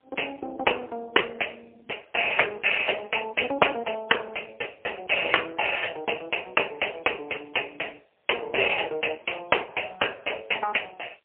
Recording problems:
telephone audio; 340 Hz to 3 kHz, AMR-NB, then MP3

